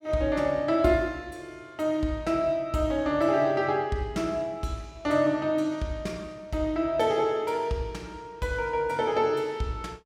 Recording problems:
none

